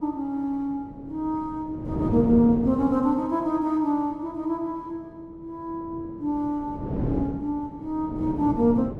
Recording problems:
wind noise; below 370 Hz, SNR 7 dB

